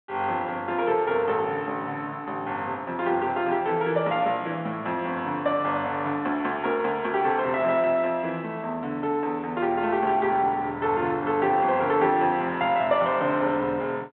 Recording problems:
phone line; 150 Hz to 3.9 kHz, G.726

